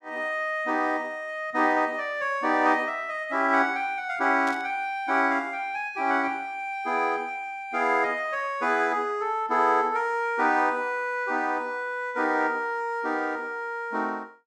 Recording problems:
burst of static; at 4.5 s; peak -10 dB vs average level

